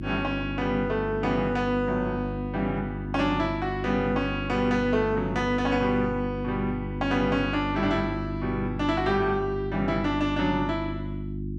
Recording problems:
hum; 50 Hz, harmonics up to 350 Hz, SNR 7 dB

